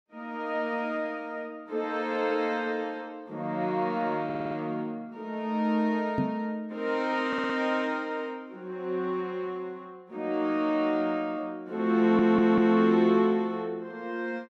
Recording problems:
audio stuttering; at 4.5 s, at 7.5 s and at 12 s
microphone bump; at 6 s; peak +4 dB vs average level

